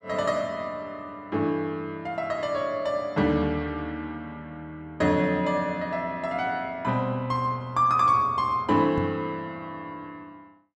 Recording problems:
knock on the microphone; at 9 s; peak 0 dB vs average level

